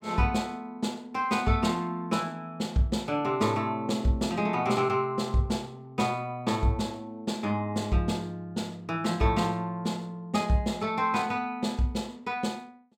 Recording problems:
none

